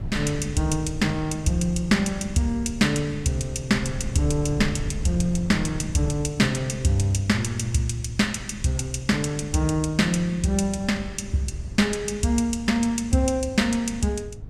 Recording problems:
hum; 50 Hz, harmonics up to 450 Hz, SNR 19 dB
wind noise; below 120 Hz, SNR 14 dB

